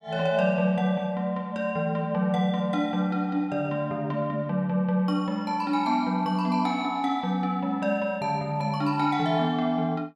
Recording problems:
none

